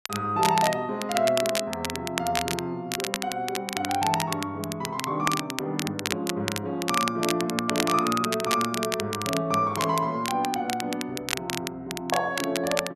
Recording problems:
crackle; vinyl, SNR 4 dB

